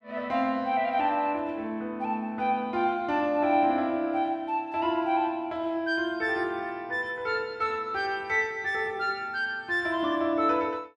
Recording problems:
none

